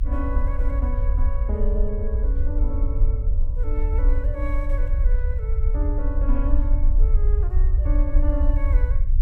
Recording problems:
low-frequency rumble; below 56 Hz, SNR -11 dB

